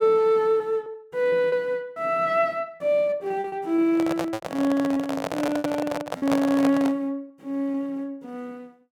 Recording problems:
packet loss; 7% of the sound replaced, filled with repeated pitch periods
handling noise; from 4 to 7 s; peak +1 dB vs average level

